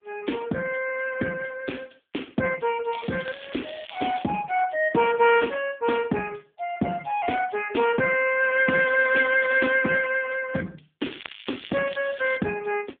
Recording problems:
telephone audio; 170 Hz to 3.4 kHz, AMR-NB
crackling; 4 times, first at 3 s; loose cable, SNR 16 dB

